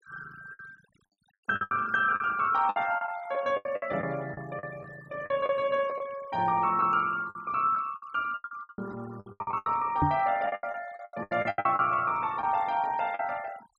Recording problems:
noise reduction artefacts; signal-to-artefact ratio 22 dB
packet loss; 15% of the sound replaced, filled with the last packet
microphone bump; at 10 s; peak +5 dB vs average level

